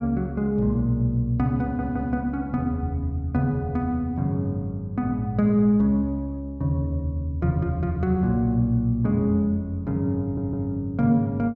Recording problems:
audio stuttering; at 1.5 s and at 10 s

